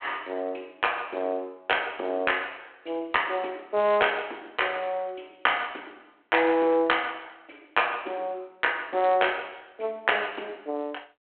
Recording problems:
telephone audio; 260 Hz to 3.3 kHz, G.726

